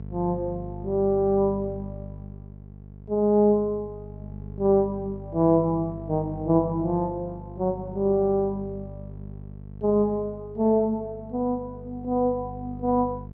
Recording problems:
mains hum; 50 Hz, harmonics up to 650 Hz, SNR 14 dB

